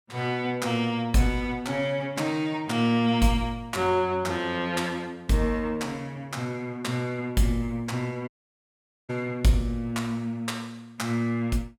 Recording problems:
dropout; at 8.5 s for 1 s

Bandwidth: 17 kHz